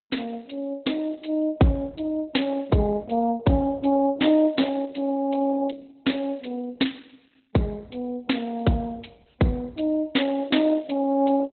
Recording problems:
codec artefacts; Opus, log-spectral distance 5 dB, nothing above 4.1 kHz

